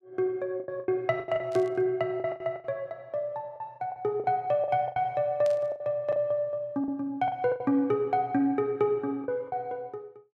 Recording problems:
packet loss; 11% of the sound replaced, filled with the last packet
burst of static; at 1.5 s and at 5.5 s; peak -11 dB vs average level

